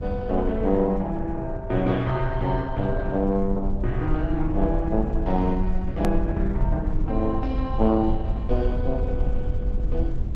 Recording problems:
lossy compression; Opus, log-spectral distance 2 dB, nothing above 13.1 kHz
low-frequency rumble; below 70 Hz, SNR 4 dB
click at an edit; at 6 s

